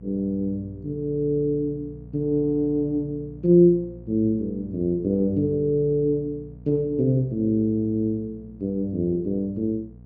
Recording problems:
electrical hum; 60 Hz, harmonics up to 480 Hz, SNR 20 dB

